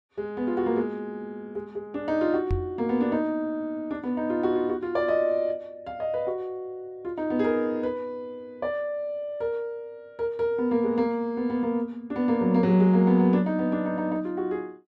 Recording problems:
knock on the microphone; at 2.5 s; peak +1 dB vs average level

